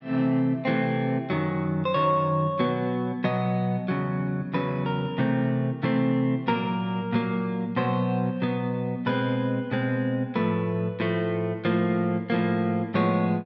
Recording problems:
none

